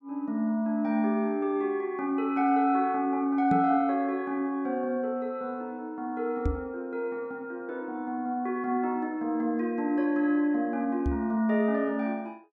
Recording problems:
microphone thump; at 3.5 s, at 6.5 s and at 11 s; peak +3 dB vs average level

